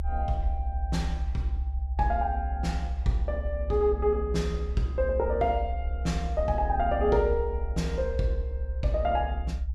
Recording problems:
rumble; below 68 Hz, strongest tone 66 Hz, SNR 3 dB

